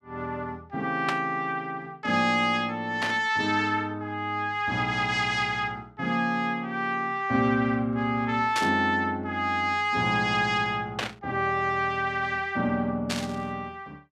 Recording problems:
static burst; 5 times, first at 1 s; peak +1 dB vs average level

